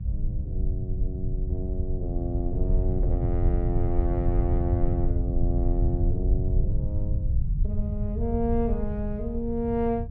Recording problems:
electrical hum; 60 Hz, harmonics up to 660 Hz, SNR 20 dB
rumble; below 92 Hz, SNR -4 dB

